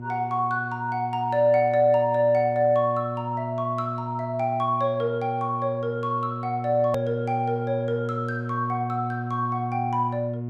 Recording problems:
hum; 60 Hz, harmonics up to 720 Hz, SNR 8 dB
hard cut with a click; at 7 s

